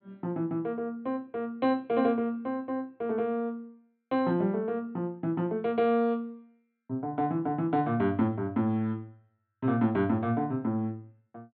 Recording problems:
low-pass filter; nothing above 4.4 kHz

